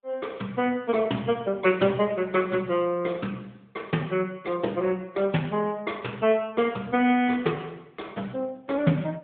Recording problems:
phone line; 130 Hz to 3.5 kHz, AMR-NB

